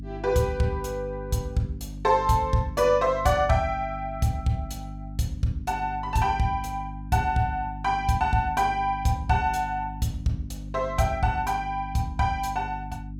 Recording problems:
hum; 50 Hz, harmonics up to 300 Hz, SNR 12 dB

